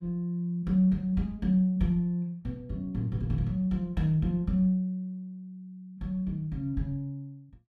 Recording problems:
none

